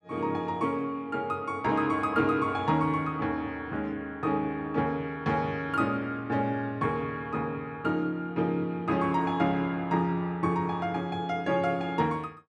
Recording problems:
none

